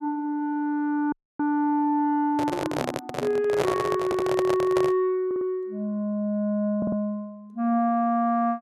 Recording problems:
dropout; at 1 s
microphone handling noise; from 2.5 to 5 s; peak +2 dB vs average level
audio stuttering; at 4 s, at 5.5 s and at 7 s

